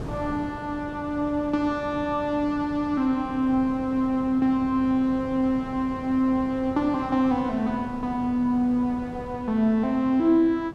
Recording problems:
wind noise; below 430 Hz, SNR 15 dB

